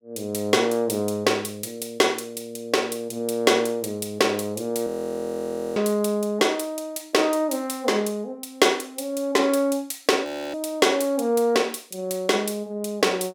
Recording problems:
audio freezing; at 5 s for 1 s and at 10 s

